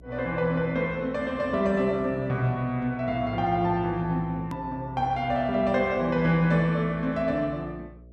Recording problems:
hum; 60 Hz, harmonics up to 660 Hz, SNR 20 dB
hard cut with a click; at 4.5 s

